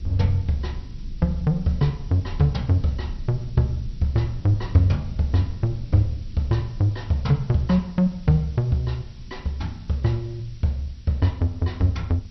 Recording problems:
lossy codec; MP2, then MP2, log-spectral distance 3 dB
hiss; slope +4 dB per octave, SNR 29 dB
low-frequency rumble; below 98 Hz, SNR 15 dB

